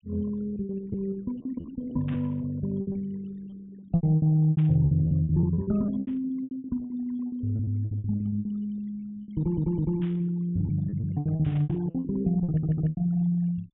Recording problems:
treble missing; nothing above 3.6 kHz
noise reduction artefacts; signal-to-artefact ratio 21 dB
packet loss; 20% of the sound replaced, filled with repeated pitch periods
burst of static; 5 times, first at 2 s; peak -15 dB vs average level
audio stuttering; at 9.5 s and at 12 s

